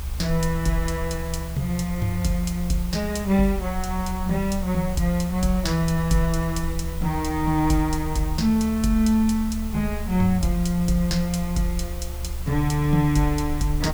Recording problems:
hum; 60 Hz, harmonics up to 480 Hz, SNR 22 dB
hiss; slope -2 dB per octave, SNR 17 dB
low-frequency rumble; below 70 Hz, SNR 9 dB

